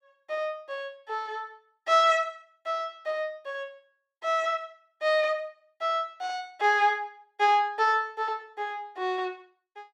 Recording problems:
none

